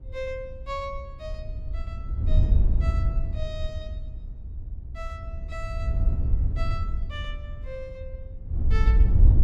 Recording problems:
wind on the microphone; below 76 Hz, SNR -12 dB

